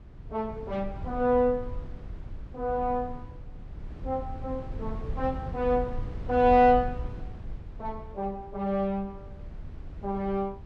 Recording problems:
rumble; below 110 Hz, SNR 12 dB

